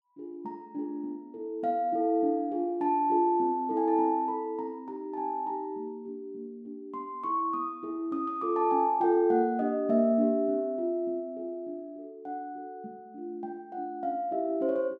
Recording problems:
none

